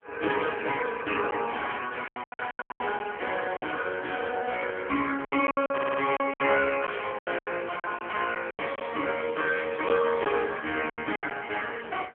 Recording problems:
phone line; 240 Hz to 3.1 kHz, AMR-NB
packet loss; 11% of the sound replaced, filled with silence
crackling; from 3 to 5 s and at 6.5 s; loose cable, SNR 27 dB
stutter; at 5.5 s

